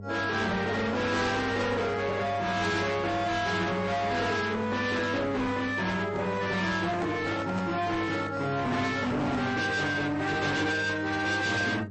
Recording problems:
lossy compression; MP3, then AAC, log-spectral distance 3 dB, nothing above 8 kHz
distortion; hard clipping, signal-to-distortion ratio 7 dB
hum; 50 Hz, harmonics up to 600 Hz, SNR 14 dB
handling noise; from 6 to 9.5 s; peak -5 dB vs average level

